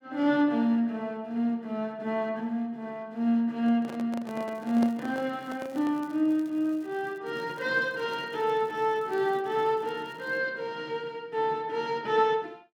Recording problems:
microphone handling noise; from 3.5 to 6 s; peak -1 dB vs average level
crackling; from 4.5 to 7 s and from 7.5 to 10 s; loose cable, SNR 30 dB

